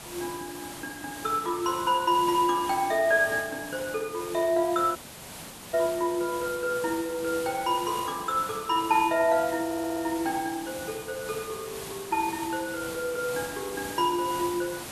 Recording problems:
background hiss; slope -3 dB per octave, SNR 12 dB
dropout; at 5 s for 1 s
audio stuttering; at 9.5 s

